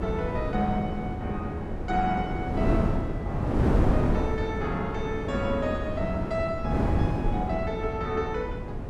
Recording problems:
wind on the microphone; below 330 Hz, SNR -2 dB

